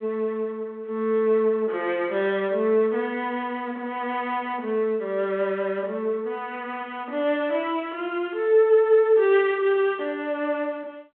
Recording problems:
phone line; 260 Hz to 3.5 kHz, G.726

